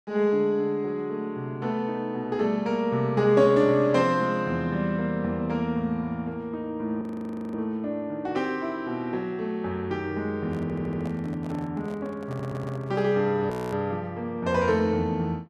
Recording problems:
frozen audio; at 7 s for 0.5 s and at 14 s
microphone handling noise; from 10 to 13 s; peak -11 dB vs average level
stutter; at 11 s and at 12 s

